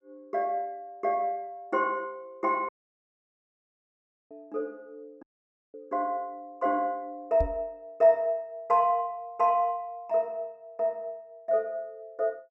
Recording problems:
audio cutting out; at 2.5 s for 1.5 s and at 5 s for 0.5 s
microphone bump; at 7.5 s; peak 0 dB vs average level

